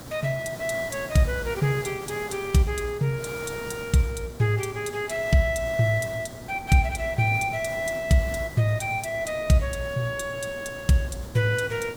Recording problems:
hum; 60 Hz, harmonics up to 1.3 kHz, SNR 24 dB
background hiss; SNR 17 dB
wind noise; below 510 Hz, SNR 22 dB

